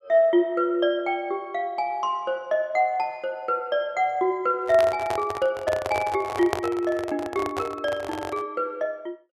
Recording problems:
microphone handling noise; from 4.5 to 8.5 s; peak +3 dB vs average level

